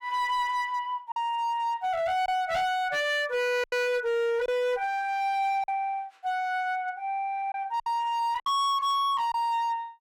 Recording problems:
distorted audio; hard clipping, signal-to-distortion ratio 7 dB
packet loss; 4% of the sound replaced, filled with silence

